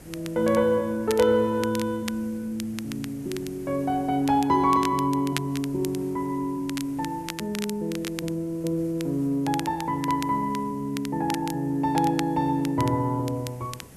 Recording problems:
background hiss; SNR 23 dB
crackle; vinyl, SNR 14 dB

